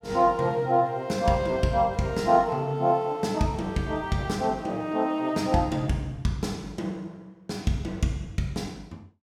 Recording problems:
none

